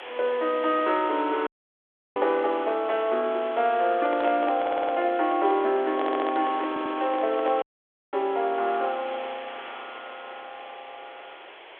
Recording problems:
phone line; 320 Hz to 3.5 kHz, G.726
hiss; SNR 16 dB
dropout; at 1.5 s for 0.5 s and at 7.5 s for 0.5 s
microphone handling noise; from 4 to 7.5 s; peak -4 dB vs average level
stutter; at 4.5 s, at 6 s and at 6.5 s

